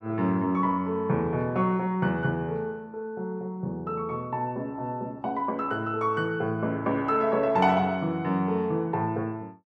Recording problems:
none

